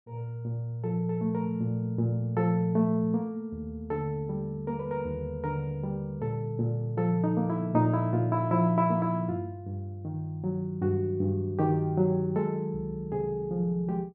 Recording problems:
none

